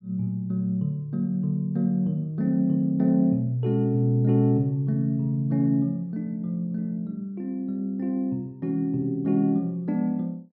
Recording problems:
none

